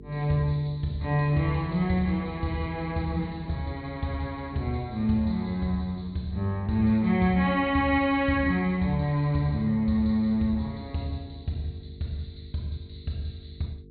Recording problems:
treble cut off; nothing above 4.4 kHz
hum; 50 Hz, harmonics up to 450 Hz, SNR 20 dB

